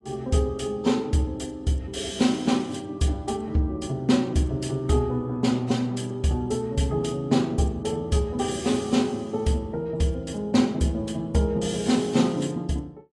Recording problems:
codec artefacts; AAC, log-spectral distance 3 dB, nothing above 10.1 kHz

